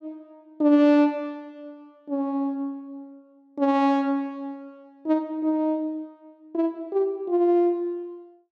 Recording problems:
none

